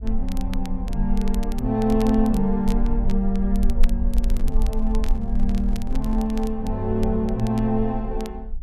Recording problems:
rumble; below 42 Hz, strongest tone 18 Hz, SNR 4 dB
crackling; vinyl, SNR 20 dB
microphone handling noise; from 4 to 6.5 s; peak -12 dB vs average level

